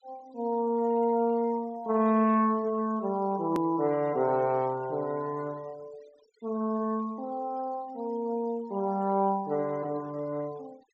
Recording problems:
treble missing; nothing above 8 kHz
denoising artefacts; signal-to-artefact ratio 27 dB
click at an edit; at 3.5 s

